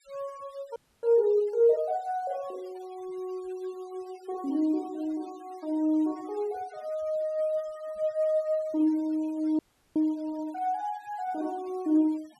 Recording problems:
denoising artefacts; signal-to-artefact ratio 27 dB
audio freezing; at 1 s and at 9.5 s

